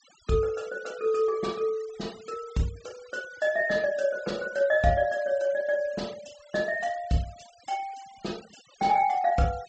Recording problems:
low-pass filter; nothing above 8 kHz
noise reduction artefacts; signal-to-artefact ratio 22 dB

